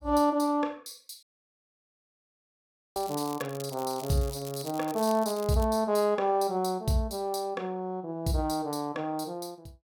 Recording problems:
audio cutting out; at 1 s for 1.5 s
crackling; from 3 to 5.5 s; loose cable, SNR 16 dB

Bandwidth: 17 kHz